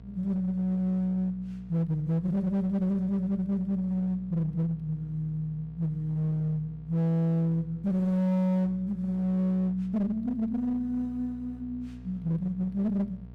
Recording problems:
distortion; hard clipping, uneven, signal-to-distortion ratio 11 dB
hum; 60 Hz, harmonics up to 720 Hz, SNR 19 dB

